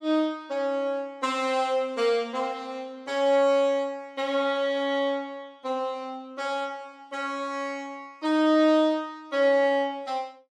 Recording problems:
none

